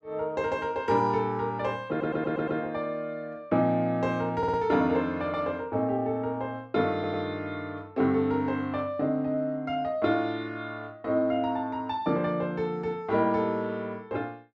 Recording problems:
audio stuttering; at 2 s, at 4.5 s and at 7 s

